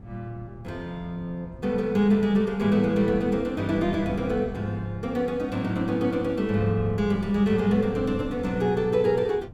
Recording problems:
wind on the microphone; below 200 Hz, SNR 16 dB

